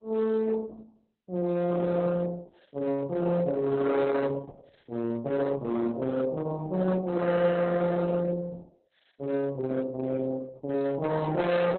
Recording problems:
lossy codec; Opus, log-spectral distance 3 dB, nothing above 4 kHz
distortion; hard clipping, signal-to-distortion ratio 8 dB

